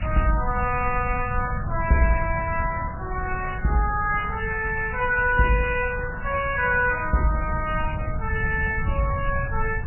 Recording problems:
lossy compression; MP3, then AAC, log-spectral distance 15 dB, nothing above 2.4 kHz
hiss; SNR 16 dB
low-frequency rumble; below 110 Hz, SNR 7 dB

